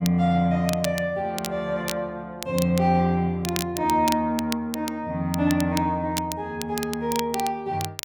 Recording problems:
crackle; vinyl, SNR 10 dB

